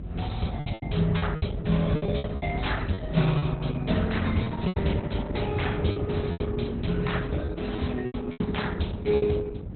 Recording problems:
lossy compression; Opus, log-spectral distance 5 dB, nothing above 4.1 kHz
hum; 60 Hz, harmonics up to 720 Hz, SNR 23 dB
low-frequency rumble; below 150 Hz, SNR 6 dB
wind on the microphone; below 260 Hz, SNR 7 dB
packet loss; 10% of the sound replaced, filled with repeated pitch periods

